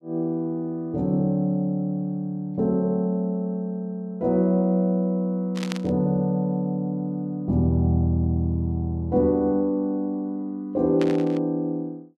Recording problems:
burst of static; at 5.5 s and at 11 s; peak -3 dB vs average level

